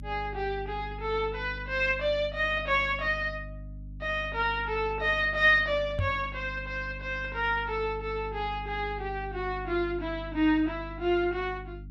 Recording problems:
electrical hum; 50 Hz, harmonics up to 300 Hz, SNR 14 dB
microphone bump; at 6 s; peak +2 dB vs average level

